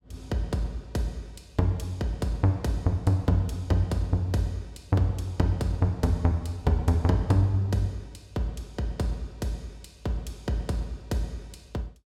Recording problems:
none

